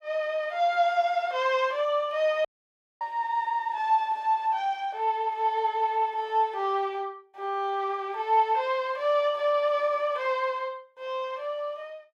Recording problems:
dropout; at 2.5 s for 0.5 s

